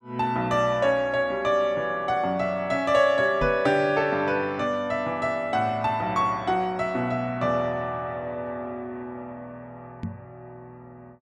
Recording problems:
knock on the microphone; at 3.5 s and at 10 s; peak -2 dB vs average level

